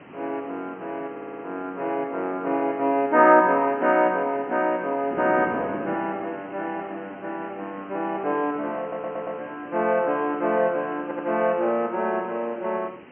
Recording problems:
telephone audio; 220 Hz to 3.1 kHz, G.711
background hiss; SNR 25 dB
wind noise; below 530 Hz, SNR 18 dB
audio stuttering; at 1 s, at 9 s and at 11 s

